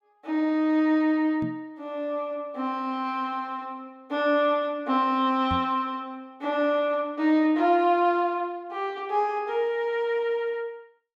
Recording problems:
microphone bump; at 1.5 s and at 5.5 s; peak -3 dB vs average level

